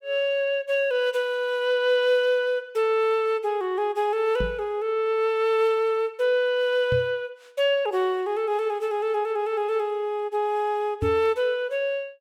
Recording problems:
microphone thump; at 4.5 s, at 7 s and at 11 s; peak -1 dB vs average level

